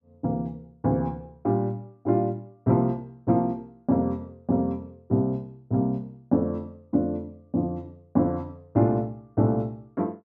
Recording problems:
none

